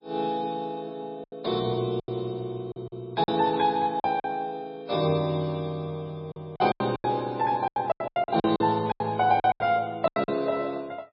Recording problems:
codec artefacts; MP3, log-spectral distance 2 dB, nothing above 5 kHz
lost packets; 12% of the sound replaced, filled with silence

